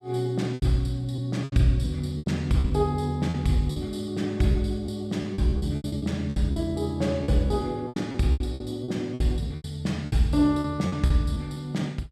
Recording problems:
lost packets; 13% of the sound replaced, filled with repeated pitch periods

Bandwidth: 14.5 kHz